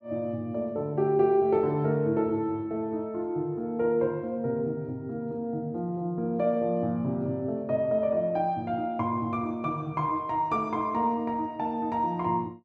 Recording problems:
none

